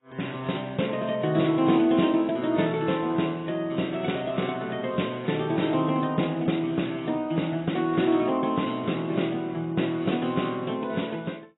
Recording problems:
codec artefacts; AAC, log-spectral distance 5 dB, nothing above 3.8 kHz

